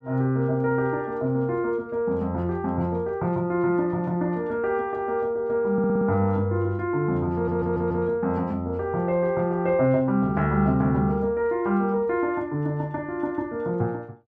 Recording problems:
audio stuttering; at 5.5 s and at 7.5 s

